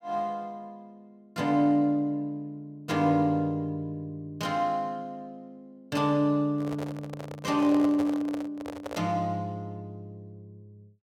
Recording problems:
handling noise; from 6.5 to 9 s; peak -4 dB vs average level

